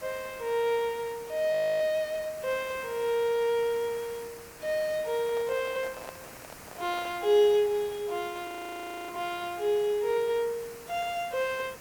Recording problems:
background hiss; SNR 17 dB
frozen audio; at 1.5 s and at 8.5 s for 0.5 s
microphone handling noise; from 5 to 7 s; peak -8 dB vs average level

